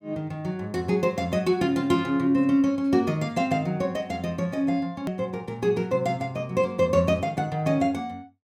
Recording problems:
click at an edit; at 5 s

